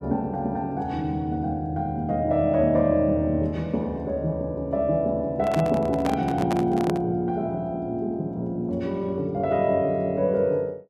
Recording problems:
handling noise; from 5.5 to 7 s; peak 0 dB vs average level

